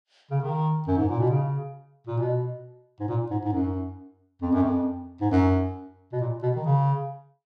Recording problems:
none

